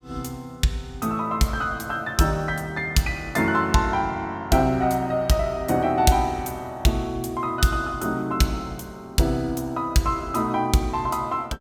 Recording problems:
none

